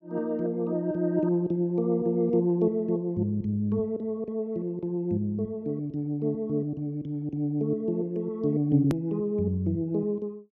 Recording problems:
hard cut with a click; at 9 s

